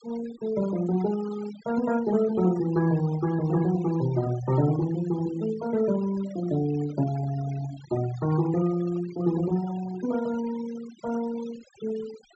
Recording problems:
low-pass filter; nothing above 7.8 kHz
noise reduction artefacts; signal-to-artefact ratio 16 dB

